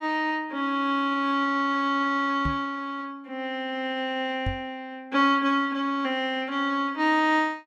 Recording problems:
knock on the microphone; at 2.5 s and at 4.5 s; peak -1 dB vs average level

